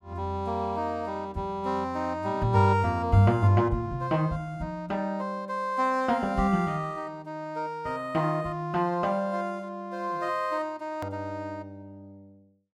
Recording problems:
edit click; at 11 s

